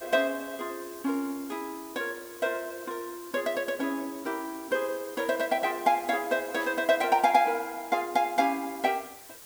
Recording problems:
background hiss; slope -1 dB per octave, SNR 17 dB
static burst; at 6.5 s; peak -14 dB vs average level

